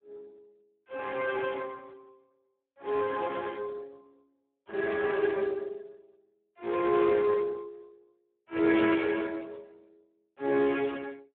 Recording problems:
phone line; 240 Hz to 2.8 kHz, Speex

